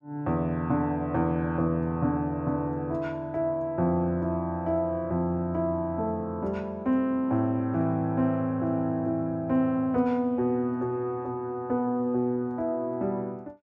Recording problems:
none

